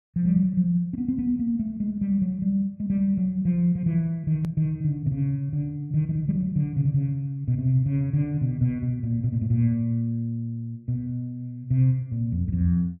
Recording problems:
edit click; at 4.5 s

